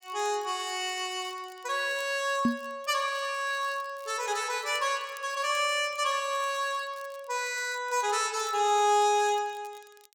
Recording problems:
crackling; vinyl, SNR 26 dB
knock on the microphone; at 2.5 s; peak +6 dB vs average level

